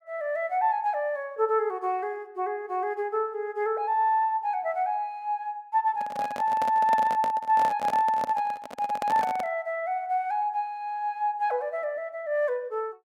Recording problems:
handling noise; from 6 to 9.5 s; peak -1 dB vs average level

